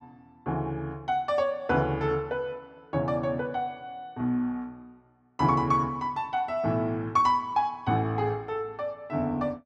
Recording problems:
none

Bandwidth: 12 kHz